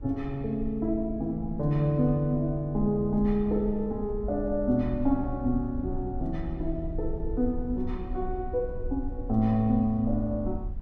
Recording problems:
rumble; below 60 Hz, SNR 10 dB

